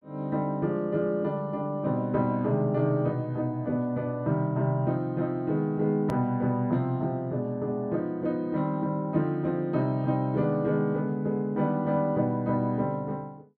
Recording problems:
hard cut with a click; at 6 s

